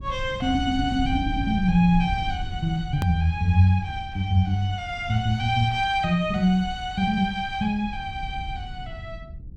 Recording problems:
low-frequency rumble; below 100 Hz, SNR 12 dB
edit click; at 3 s

